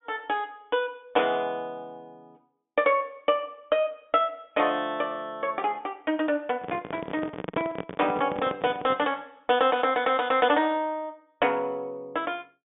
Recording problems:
treble cut off; nothing above 3.6 kHz
microphone handling noise; from 6.5 to 9 s; peak -1 dB vs average level

